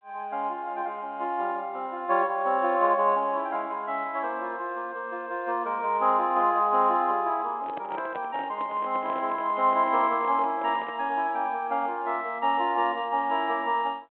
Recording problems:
phone line; 220 Hz to 3.7 kHz, G.726
microphone handling noise; from 7.5 to 11 s; peak -7 dB vs average level

